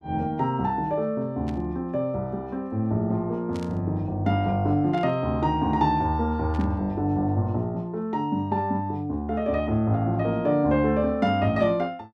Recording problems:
static burst; 4 times, first at 1.5 s; peak -15 dB vs average level

